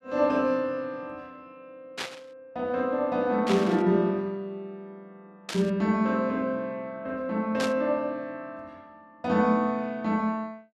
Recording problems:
static burst; 4 times, first at 2 s; peak -1 dB vs average level

